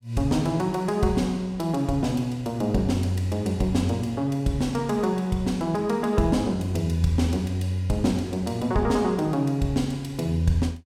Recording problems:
none

